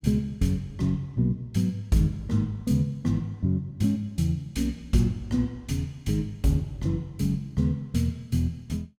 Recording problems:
none

